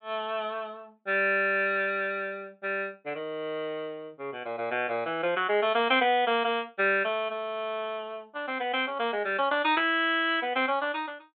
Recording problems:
low-pass filter; nothing above 4 kHz

